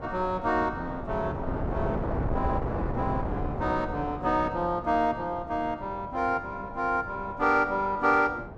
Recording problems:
wind on the microphone; below 540 Hz, SNR 7 dB

